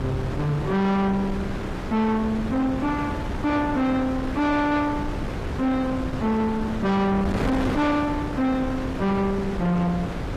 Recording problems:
codec artefacts; AAC, log-spectral distance 2 dB, nothing above 15.1 kHz
distorted audio; soft clipping, signal-to-distortion ratio 8 dB
wind on the microphone; below 580 Hz, SNR 6 dB

